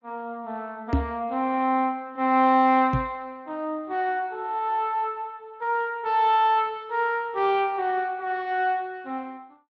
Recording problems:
codec artefacts; Speex, log-spectral distance 2 dB
microphone thump; at 1 s and at 3 s; peak +5 dB vs average level

